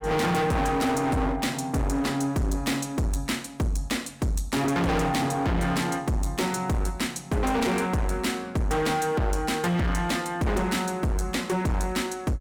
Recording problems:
distorted audio; hard clipping, signal-to-distortion ratio 6 dB

